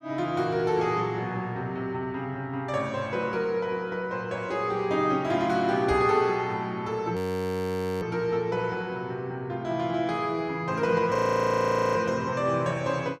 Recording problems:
microphone thump; at 6 s; peak -4 dB vs average level
audio freezing; at 7 s for 1 s and at 11 s for 1 s

